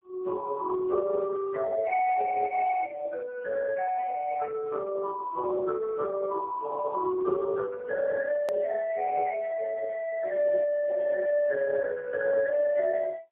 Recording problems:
phone line; 320 Hz to 2 kHz, AMR-NB, then MP3
edit click; at 8.5 s

